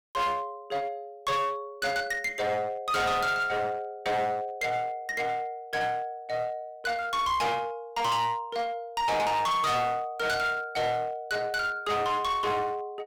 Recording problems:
distorted audio; hard clipping, uneven, signal-to-distortion ratio 7 dB

